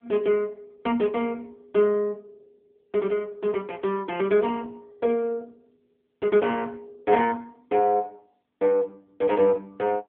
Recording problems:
telephone audio; 220 Hz to 3.3 kHz, AMR-NB

